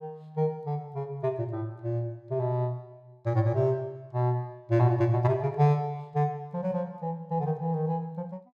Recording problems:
none

